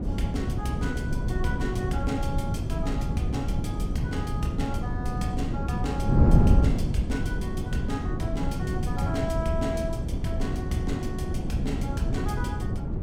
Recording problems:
wind on the microphone; below 190 Hz, SNR -5 dB

